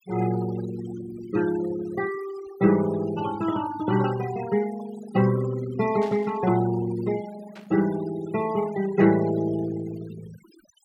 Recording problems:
noise reduction artefacts; signal-to-artefact ratio 14 dB
burst of static; at 6 s and at 7.5 s; peak -14 dB vs average level

